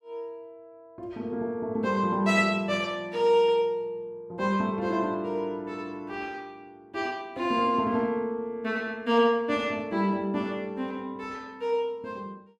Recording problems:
none

